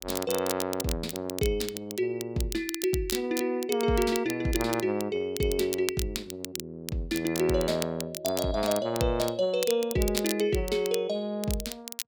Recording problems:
crackle; vinyl, SNR 9 dB

